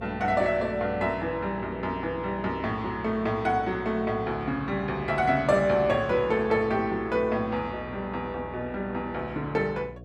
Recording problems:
hum; 60 Hz, harmonics up to 720 Hz, SNR 16 dB

